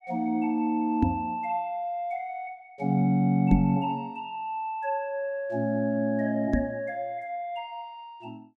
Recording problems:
microphone thump; at 1 s, at 3.5 s and at 6.5 s; peak +8 dB vs average level

